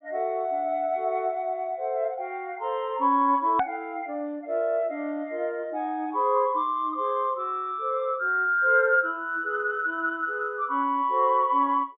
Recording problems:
treble missing; nothing above 4 kHz
edit click; at 3.5 s

